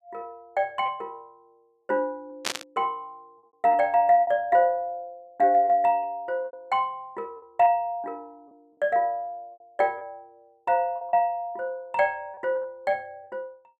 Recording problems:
packet loss; 5% of the sound replaced, filled with repeated pitch periods
static burst; at 2.5 s; peak +2 dB vs average level

